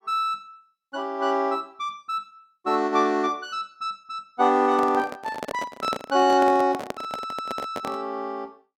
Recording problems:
handling noise; from 4.5 to 8 s; peak -2 dB vs average level

